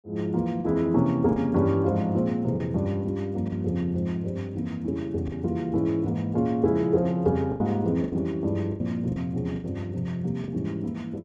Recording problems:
packet loss; 5% of the sound replaced, filled with the last packet

